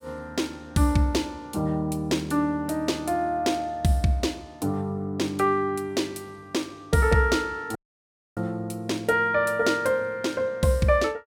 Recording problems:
audio cutting out; at 8 s for 0.5 s

